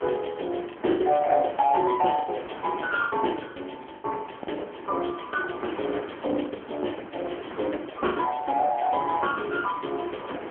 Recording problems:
telephone audio; 280 Hz to 3.3 kHz, AMR-NB
wind on the microphone; below 1.2 kHz, SNR 13 dB
lost packets; 5% of the sound replaced, filled with the last packet

